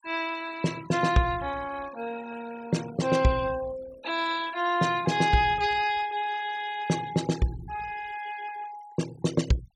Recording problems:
denoising artefacts; signal-to-artefact ratio 16 dB

